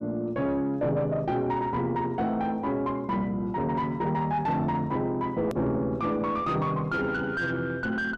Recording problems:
distorted audio; soft clipping, signal-to-distortion ratio 10 dB
hard cut with a click; at 5.5 s

